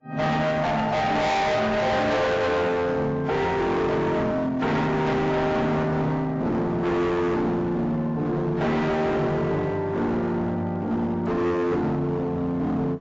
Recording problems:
codec artefacts; AAC, log-spectral distance 2 dB, nothing above 7.3 kHz
distortion; hard clipping, signal-to-distortion ratio 6 dB

